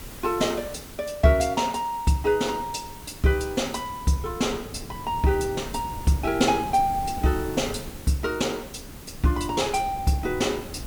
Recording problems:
background hiss; slope -2 dB per octave, SNR 18 dB
wind on the microphone; below 270 Hz, SNR 15 dB

